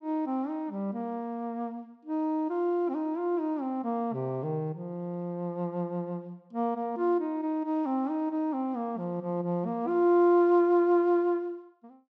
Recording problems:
none

